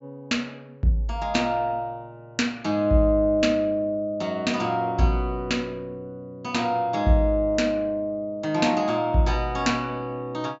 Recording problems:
treble missing; nothing above 8 kHz

